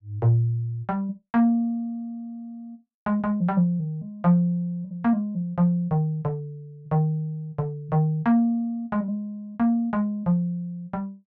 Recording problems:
none

